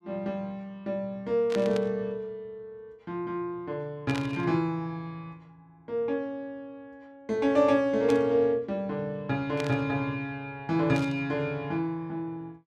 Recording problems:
static burst; 5 times, first at 1.5 s; peak -5 dB vs average level

